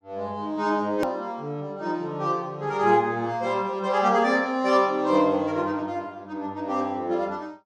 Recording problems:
click at an edit; at 1 s

